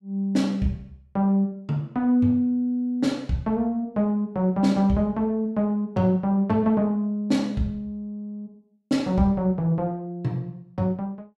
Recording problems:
none

